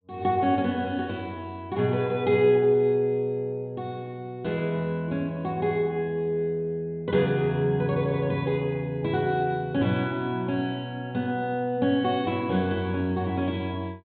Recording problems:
low-pass filter; nothing above 4 kHz

